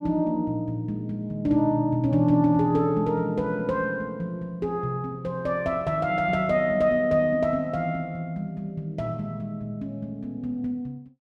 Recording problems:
none

